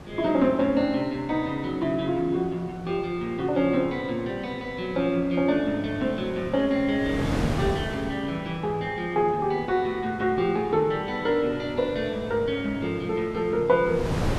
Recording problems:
wind noise; below 560 Hz, SNR 12 dB

